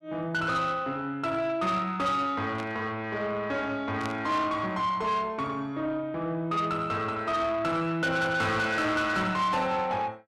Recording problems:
distorted audio; soft clipping, signal-to-distortion ratio 11 dB
static burst; at 2.5 s and at 4 s; peak -8 dB vs average level

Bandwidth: 13 kHz